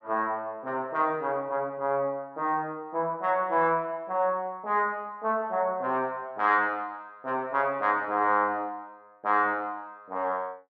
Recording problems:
none

